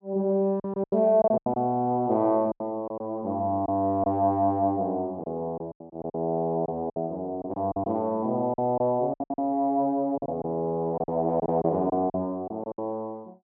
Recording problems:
packet loss; 11% of the sound replaced, filled with silence

